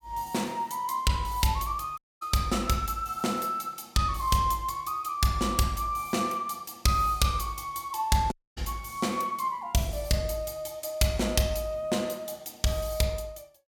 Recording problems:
audio cutting out; at 2 s and at 8.5 s

